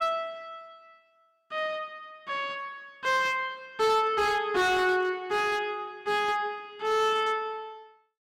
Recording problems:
distortion; hard clipping, signal-to-distortion ratio 7 dB

